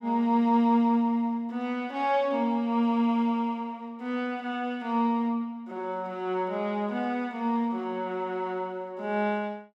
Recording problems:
none

